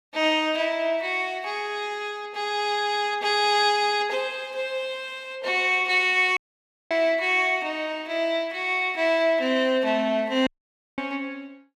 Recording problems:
dropout; at 6.5 s for 0.5 s and at 10 s for 0.5 s

